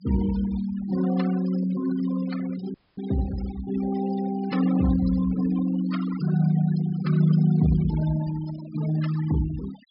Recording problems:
treble missing; nothing above 5.5 kHz
noise reduction artefacts; signal-to-artefact ratio 14 dB
dropout; at 2.5 s

